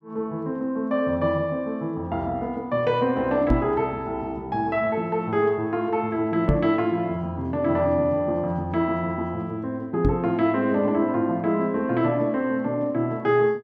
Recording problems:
microphone thump; at 3.5 s, at 6.5 s and at 10 s; peak +6 dB vs average level

